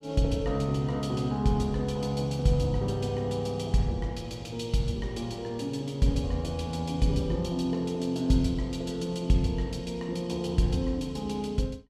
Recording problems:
none

